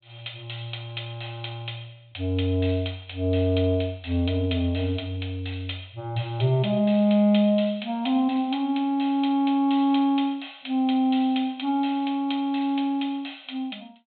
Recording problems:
treble missing; nothing above 4 kHz

